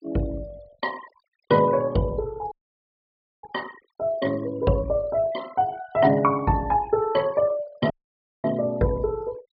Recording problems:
low-pass filter; nothing above 5.5 kHz
noise reduction artefacts; signal-to-artefact ratio 22 dB
dropout; at 2.5 s for 1 s and at 8 s for 0.5 s

